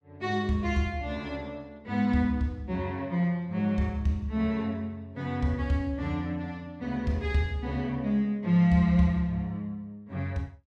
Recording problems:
none

